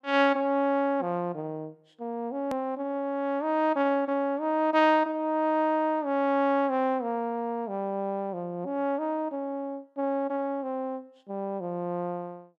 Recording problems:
click at an edit; at 2.5 s

